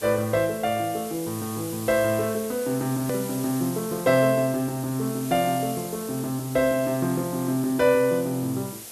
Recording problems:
background hiss; SNR 12 dB
edit click; at 3 s

